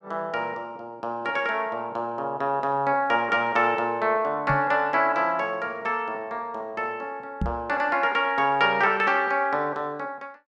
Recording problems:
microphone thump; at 4.5 s and at 7.5 s; peak 0 dB vs average level

